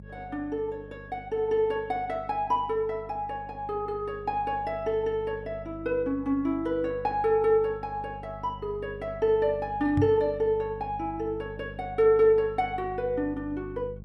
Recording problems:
hum; 50 Hz, harmonics up to 450 Hz, SNR 17 dB
microphone bump; at 10 s; peak +4 dB vs average level

